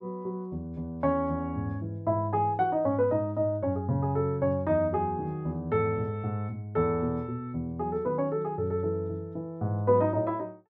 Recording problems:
none

